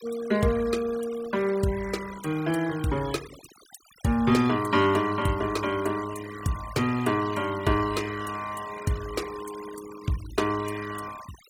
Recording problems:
noise reduction artefacts; signal-to-artefact ratio 16 dB

